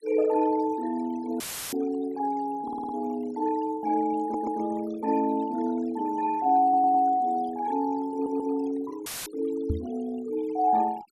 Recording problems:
noise reduction artefacts; signal-to-artefact ratio 22 dB
audio cutting out; at 1.5 s and at 9 s; filled with static
audio stuttering; 4 times, first at 2.5 s
microphone thump; at 9.5 s; peak +2 dB vs average level

